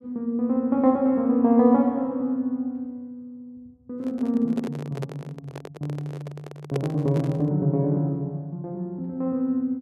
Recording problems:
handling noise; from 4 to 7.5 s; peak 0 dB vs average level

